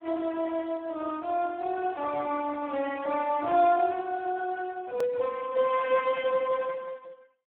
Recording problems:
phone line; 300 Hz to 2.6 kHz, Speex
edit click; at 5 s

